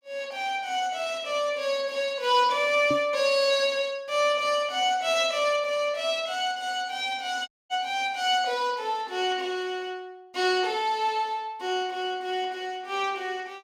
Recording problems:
knock on the microphone; at 3 s; peak -1 dB vs average level
audio cutting out; at 7.5 s

